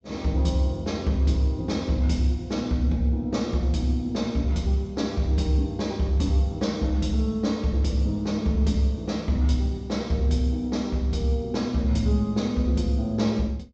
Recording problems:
treble missing; nothing above 8 kHz

